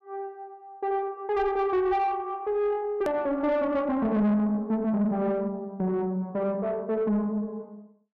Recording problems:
distorted audio; soft clipping, signal-to-distortion ratio 10 dB
click at an edit; at 3 s

